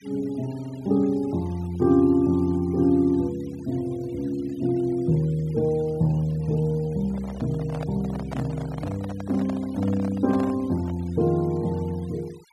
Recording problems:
denoising artefacts; signal-to-artefact ratio 25 dB
handling noise; from 7 to 11 s; peak -7 dB vs average level

